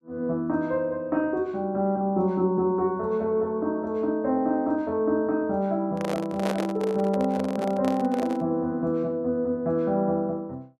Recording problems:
handling noise; from 6 to 8.5 s; peak +1 dB vs average level

